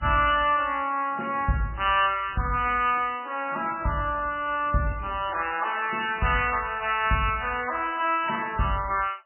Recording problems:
lossy codec; MP3, log-spectral distance 6 dB, nothing above 2.4 kHz

